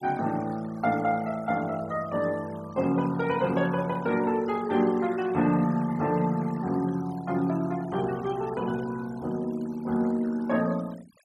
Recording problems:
denoising artefacts; signal-to-artefact ratio 20 dB

